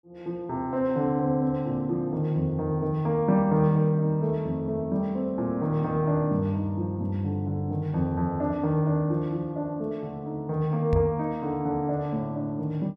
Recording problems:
knock on the microphone; at 11 s; peak +3 dB vs average level

